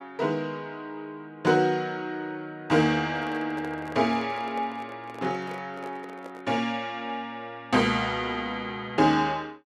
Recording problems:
handling noise; from 3 to 6.5 s; peak -9 dB vs average level

